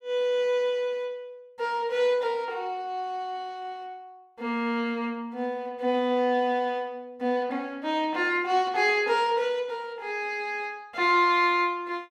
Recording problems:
none

